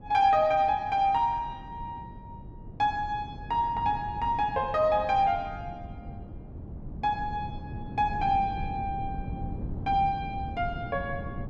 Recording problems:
wind on the microphone; below 210 Hz, SNR 12 dB

